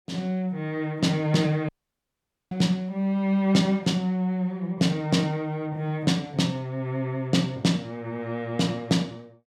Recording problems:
dropout; at 1.5 s for 1 s

